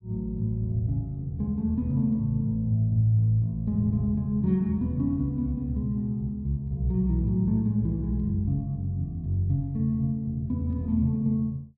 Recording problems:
none

